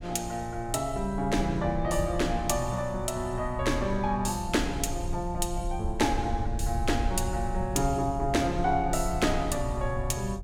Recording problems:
low-frequency rumble; below 76 Hz, SNR 7 dB

